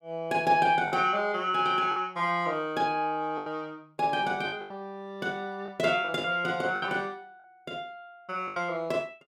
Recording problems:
packet loss; 6% of the sound replaced, filled with the last packet

